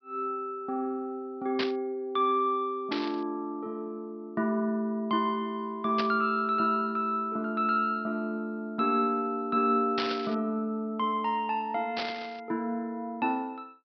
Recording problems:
low-pass filter; nothing above 5.5 kHz
static burst; 5 times, first at 1.5 s; peak +2 dB vs average level

